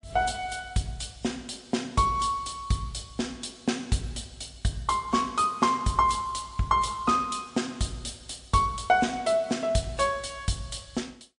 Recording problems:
lossy codec; MP3, log-spectral distance 5 dB

